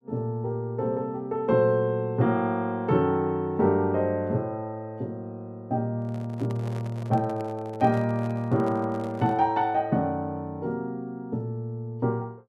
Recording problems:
handling noise; from 6 to 9.5 s; peak -11 dB vs average level

